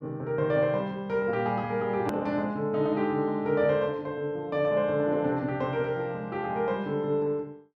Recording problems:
edit click; at 2 s

